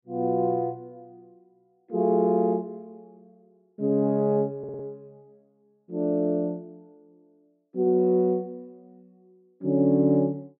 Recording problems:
stutter; at 4.5 s

